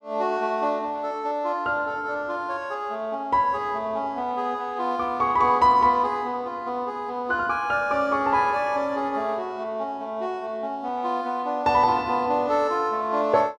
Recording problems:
none

